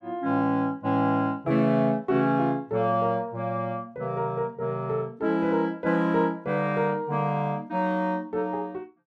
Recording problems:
none

